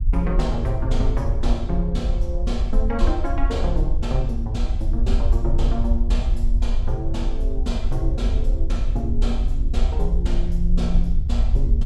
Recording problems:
low-frequency rumble; below 52 Hz, SNR -4 dB

